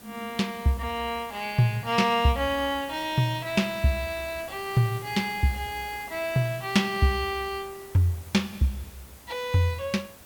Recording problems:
background hiss; slope -4 dB per octave, SNR 18 dB

